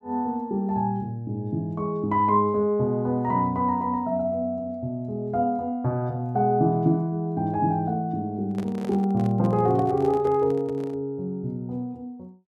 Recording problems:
handling noise; from 8.5 to 11 s; peak -8 dB vs average level

